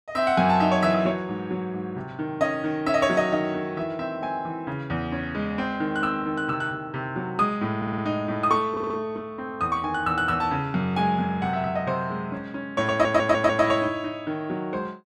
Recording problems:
stutter; at 8 s, at 8.5 s and at 13 s

